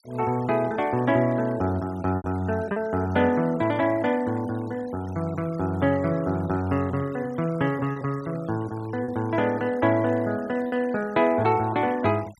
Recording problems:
noise reduction artefacts; signal-to-artefact ratio 22 dB
packet loss; 2% of the sound replaced, filled with repeated pitch periods

